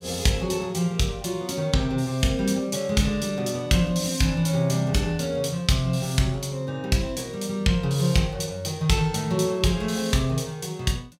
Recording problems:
none

